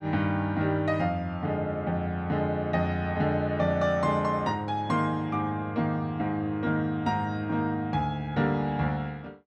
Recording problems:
none

